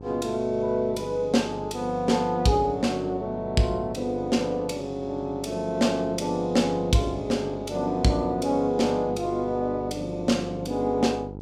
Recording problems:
hum; 50 Hz, harmonics up to 950 Hz, SNR 14 dB

